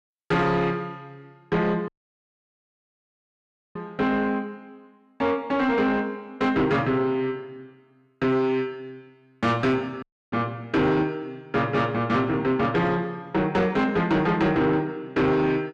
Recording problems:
distorted audio; soft clipping, signal-to-distortion ratio 10 dB
dropout; at 2 s for 2 s and at 10 s

